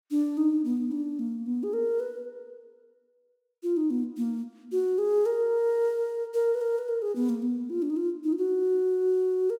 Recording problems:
none

